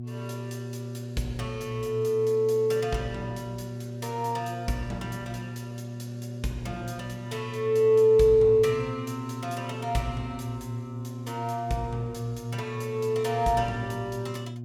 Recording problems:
electrical hum; 60 Hz, harmonics up to 360 Hz, SNR 10 dB

